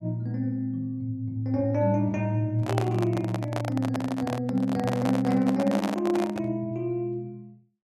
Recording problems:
microphone handling noise; from 2.5 to 6.5 s; peak +2 dB vs average level

